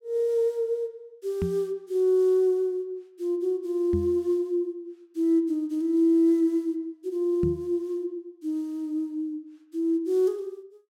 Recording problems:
microphone thump; at 1.5 s, at 4 s and at 7.5 s; peak 0 dB vs average level

